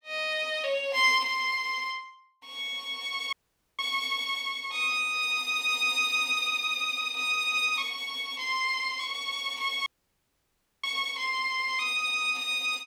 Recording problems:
dropout; at 3.5 s and at 10 s for 1 s

